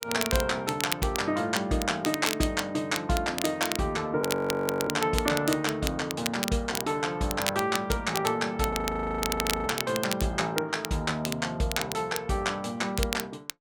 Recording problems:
crackling; vinyl, SNR 6 dB
audio freezing; at 4 s for 0.5 s and at 8.5 s for 1 s

